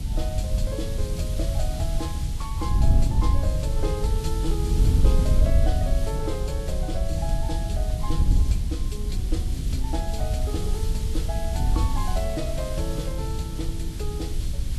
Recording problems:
lossy codec; Vorbis, log-spectral distance 2 dB, nothing above 13.5 kHz
hiss; slope +3 dB per octave, SNR 9 dB
low-frequency rumble; below 88 Hz, SNR 5 dB
wind noise; below 78 Hz, SNR -6 dB

